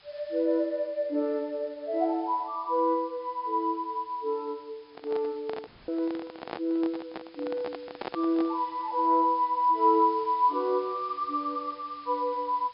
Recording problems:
treble missing; nothing above 5.5 kHz
hiss; SNR 27 dB
handling noise; from 5 to 8.5 s; peak -3 dB vs average level
audio cutting out; at 5.5 s

